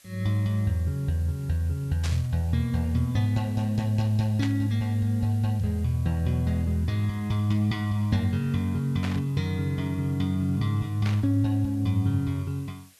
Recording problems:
background hiss; slope +2 dB per octave, SNR 27 dB
burst of static; 4 times, first at 2 s; peak -5 dB vs average level

